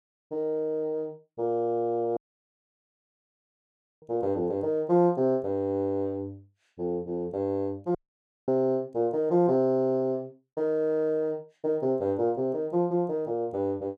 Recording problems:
audio cutting out; at 2 s for 2 s and at 8 s for 0.5 s

